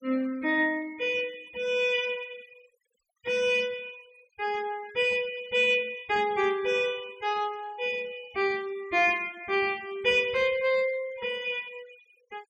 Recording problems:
noise reduction artefacts; signal-to-artefact ratio 24 dB

